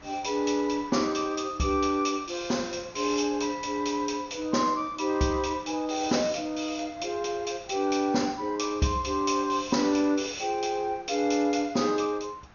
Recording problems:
lossy compression; MP2, log-spectral distance 5 dB, nothing above 6.3 kHz
background hiss; SNR 24 dB

